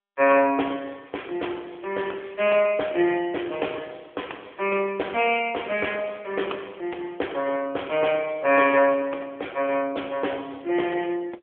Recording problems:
phone line; 300 Hz to 3.4 kHz, AMR-NB

